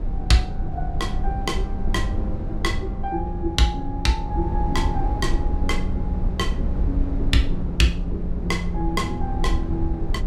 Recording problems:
low-frequency rumble; below 76 Hz, SNR 1 dB

